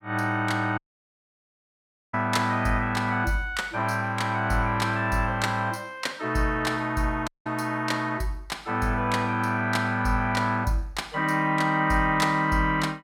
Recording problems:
dropout; at 1 s for 1.5 s and at 7.5 s

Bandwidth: 17.5 kHz